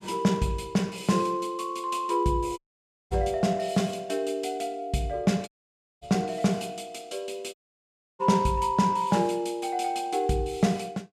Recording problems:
audio cutting out; at 2.5 s for 0.5 s, at 5.5 s for 0.5 s and at 7.5 s for 0.5 s

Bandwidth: 14.5 kHz